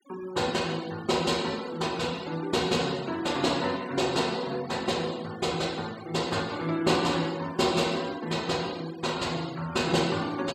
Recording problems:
noise reduction artefacts; signal-to-artefact ratio 18 dB

